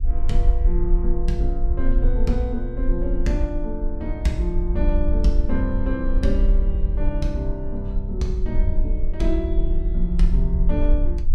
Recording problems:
low-frequency rumble; below 48 Hz, SNR -2 dB

